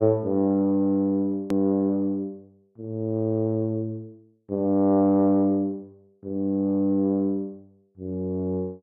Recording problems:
click at an edit; at 1.5 s

